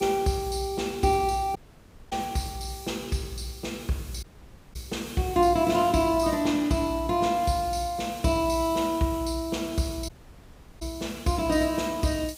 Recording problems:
hiss; SNR 19 dB
audio cutting out; at 1.5 s for 0.5 s, at 4 s for 0.5 s and at 10 s for 0.5 s

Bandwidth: 15.5 kHz